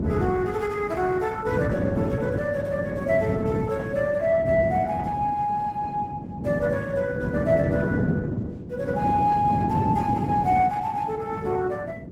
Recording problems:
lossy compression; Opus, log-spectral distance 2 dB, nothing above 19 kHz
wind noise; below 300 Hz, SNR 4 dB

